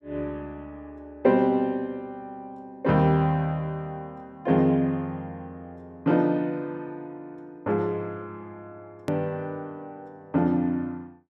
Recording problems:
click at an edit; at 9 s

